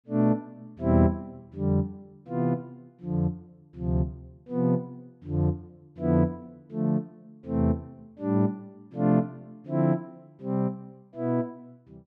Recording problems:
none

